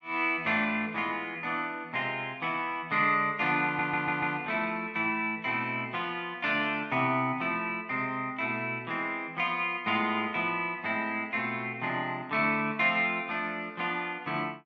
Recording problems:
stutter; at 3.5 s

